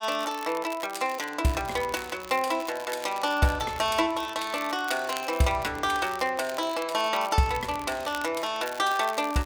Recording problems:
crackling; vinyl, SNR 16 dB

